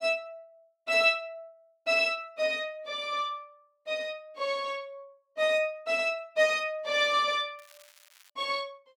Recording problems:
crackling; at 7.5 s; loose cable, SNR 27 dB

